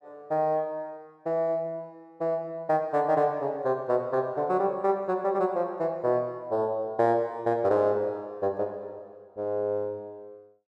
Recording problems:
none

